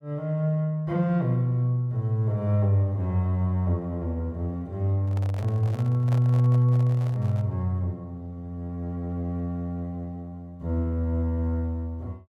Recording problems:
handling noise; from 5 to 7.5 s; peak -10 dB vs average level

